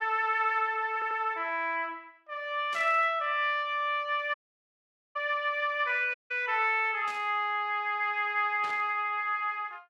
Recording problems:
stutter; at 1 s
static burst; at 2.5 s, at 7 s and at 8.5 s; peak -12 dB vs average level
audio cutting out; at 4.5 s for 1 s and at 6 s

